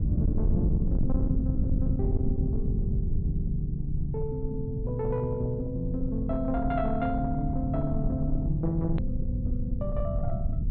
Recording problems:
low-pass filter; nothing above 4.2 kHz
distortion; soft clipping, signal-to-distortion ratio 11 dB
low-frequency rumble; below 120 Hz, SNR 0 dB
edit click; at 9 s

